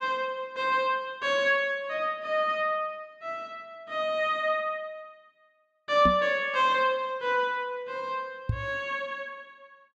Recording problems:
microphone bump; at 6 s and at 8.5 s; peak +3 dB vs average level

